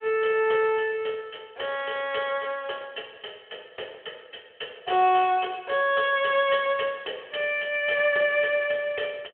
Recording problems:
phone line; 320 Hz to 3.4 kHz, Speex

